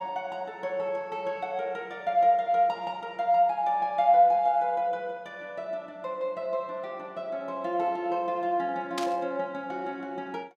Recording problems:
burst of static; at 9 s; peak -2 dB vs average level

